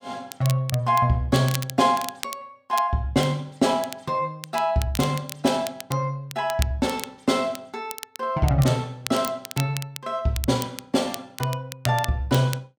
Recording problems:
crackling; vinyl, SNR 13 dB

